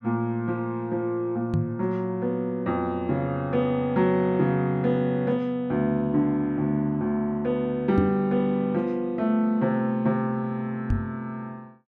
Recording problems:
microphone thump; at 1.5 s, at 8 s and at 11 s; peak +4 dB vs average level

